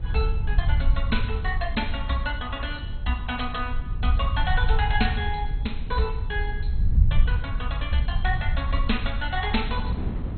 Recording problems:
codec artefacts; MP2, then MP2, log-spectral distance 3 dB, nothing above 4.2 kHz
rumble; below 72 Hz, SNR -1 dB
wind on the microphone; below 230 Hz, SNR 13 dB

